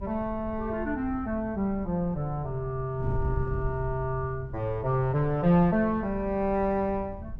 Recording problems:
wind on the microphone; below 100 Hz, SNR 11 dB

